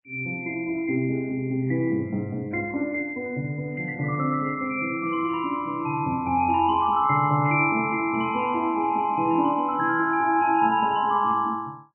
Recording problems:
codec artefacts; MP3, log-spectral distance 2 dB, nothing above 2.5 kHz

